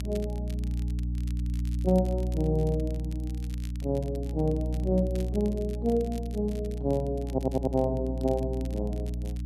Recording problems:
hum; 60 Hz, harmonics up to 300 Hz, SNR 3 dB
crackle; vinyl, SNR 23 dB
audio stuttering; at 7.5 s

